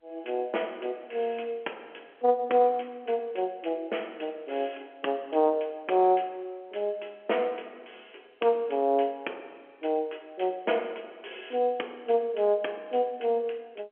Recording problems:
telephone audio; 260 Hz to 3.4 kHz, G.711

